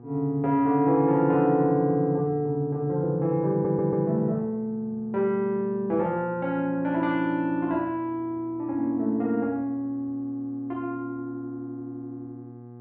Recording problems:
electrical hum; 60 Hz, harmonics up to 1.2 kHz, SNR 19 dB
audio stuttering; at 3.5 s

